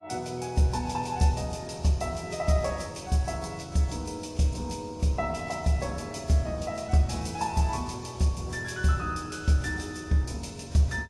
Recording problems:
codec artefacts; AAC, log-spectral distance 3 dB

